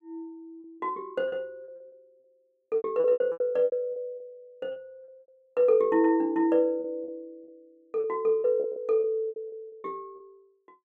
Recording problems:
lost packets; 15% of the sound replaced, filled with repeated pitch periods

